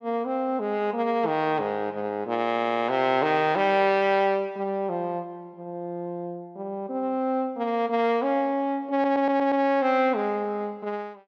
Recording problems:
audio stuttering; at 2.5 s and at 9 s

